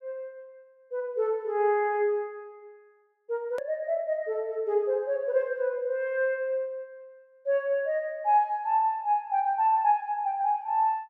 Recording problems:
hard cut with a click; at 3.5 s

